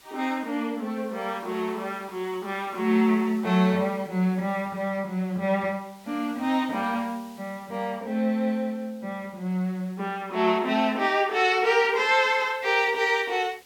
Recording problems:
hiss; slope 0 dB per octave, SNR 27 dB

